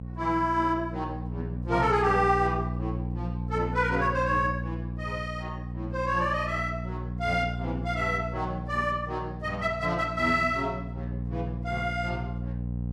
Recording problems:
hum; 60 Hz, harmonics up to 540 Hz, SNR 6 dB

